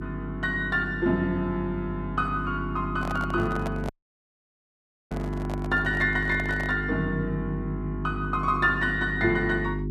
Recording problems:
hum; 50 Hz, harmonics up to 400 Hz, SNR 6 dB
microphone handling noise; from 3 to 7 s; peak -4 dB vs average level
audio cutting out; at 4 s for 1 s

